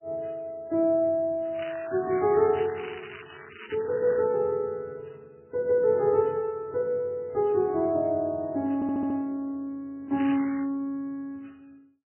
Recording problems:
lossy compression; MP3, then AAC, log-spectral distance 4 dB, nothing above 2.5 kHz
crackling; from 1.5 to 4.5 s and at 10 s; loose cable, SNR 16 dB
audio stuttering; at 9 s

